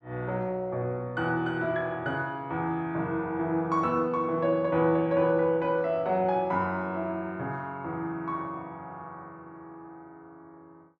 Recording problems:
none

